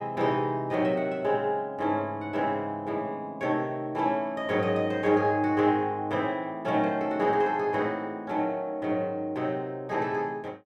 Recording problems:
none

